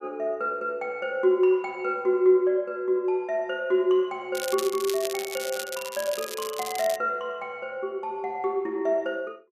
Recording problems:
crackling; from 4.5 to 7 s; loose cable, SNR 10 dB

